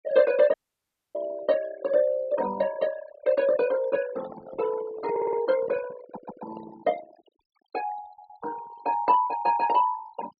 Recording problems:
treble missing; nothing above 5.4 kHz
denoising artefacts; signal-to-artefact ratio 16 dB
dropout; at 0.5 s for 0.5 s
microphone handling noise; from 4 to 7 s; peak -11 dB vs average level
stutter; at 5 s, at 6 s and at 8 s

